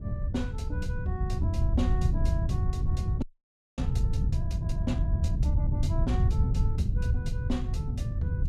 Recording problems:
wind noise; below 110 Hz, SNR -8 dB
audio freezing; at 3 s for 0.5 s

